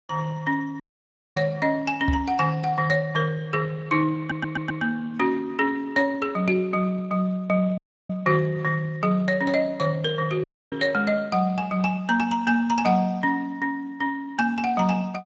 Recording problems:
codec artefacts; Speex, log-spectral distance 3 dB
audio cutting out; at 1 s for 0.5 s, at 8 s and at 10 s
knock on the microphone; at 2 s and at 11 s; peak +1 dB vs average level
audio stuttering; at 4 s

